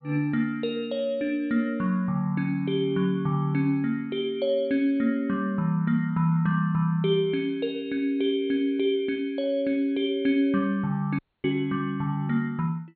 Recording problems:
low-pass filter; nothing above 4.4 kHz
dropout; at 11 s

